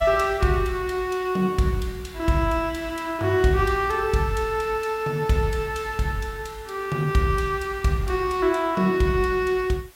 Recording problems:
background hiss; slope -1 dB per octave, SNR 26 dB

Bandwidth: 16 kHz